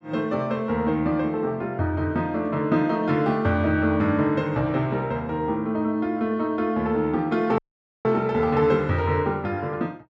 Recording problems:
audio cutting out; at 7.5 s

